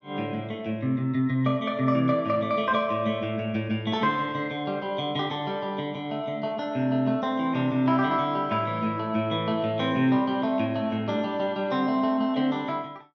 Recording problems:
none

